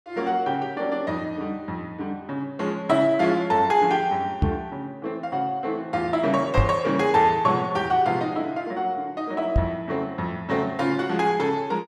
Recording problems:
microphone thump; at 4.5 s, at 6.5 s and at 9.5 s; peak +6 dB vs average level

